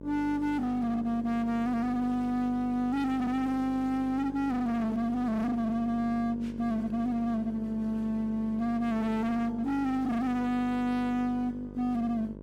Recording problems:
distorted audio; hard clipping, signal-to-distortion ratio 7 dB
electrical hum; 50 Hz, harmonics up to 1.1 kHz, SNR 15 dB

